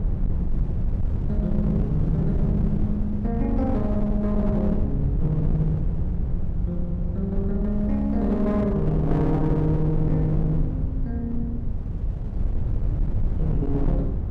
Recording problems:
distortion; hard clipping, signal-to-distortion ratio 12 dB
rumble; below 110 Hz, SNR 2 dB
wind on the microphone; below 120 Hz, SNR 17 dB

